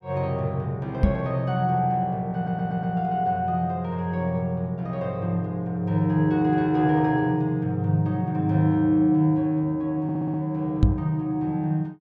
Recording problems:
microphone bump; at 1 s and at 11 s; peak +9 dB vs average level
audio stuttering; at 2.5 s and at 10 s

